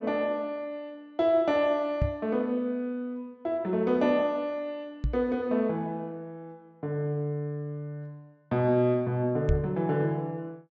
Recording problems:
treble missing; nothing above 8 kHz
knock on the microphone; at 2 s, at 5 s and at 9.5 s; peak +5 dB vs average level

